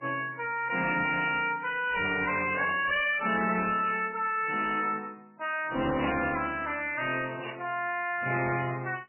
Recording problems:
codec artefacts; MP3, then MP3, log-spectral distance 6 dB, nothing above 2.7 kHz
distorted audio; hard clipping, signal-to-distortion ratio 9 dB
burst of static; at 2.5 s, at 6 s and at 7.5 s; peak -3 dB vs average level

